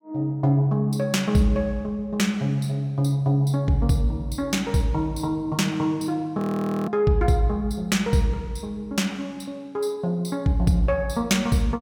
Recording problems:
frozen audio; at 6.5 s

